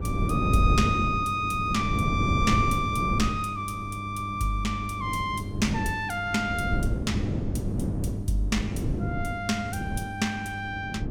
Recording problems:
electrical hum; 50 Hz, harmonics up to 700 Hz, SNR 9 dB
wind noise; below 240 Hz, SNR 2 dB

